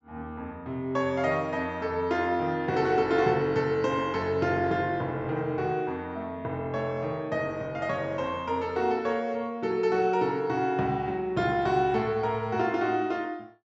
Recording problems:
treble missing; nothing above 8 kHz

